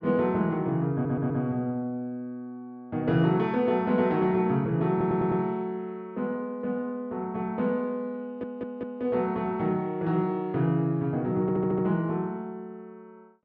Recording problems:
audio stuttering; 4 times, first at 1 s

